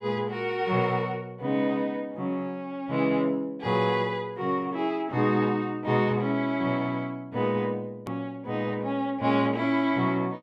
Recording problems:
click at an edit; at 8 s

